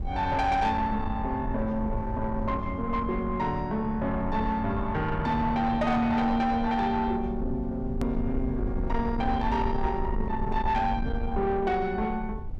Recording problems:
distorted audio; soft clipping, signal-to-distortion ratio 12 dB
low-frequency rumble; below 98 Hz, SNR 7 dB
hard cut with a click; at 8 s

